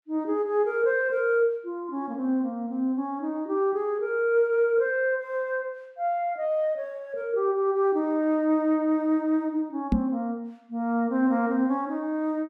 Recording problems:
microphone bump; at 10 s; peak +5 dB vs average level

